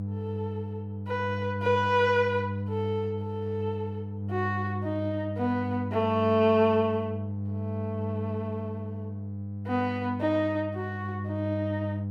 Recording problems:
hum; 50 Hz, harmonics up to 500 Hz, SNR 5 dB

